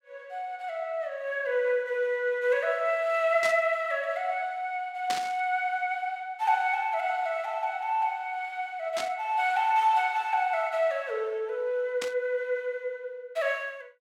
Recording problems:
static burst; 4 times, first at 3.5 s; peak -1 dB vs average level

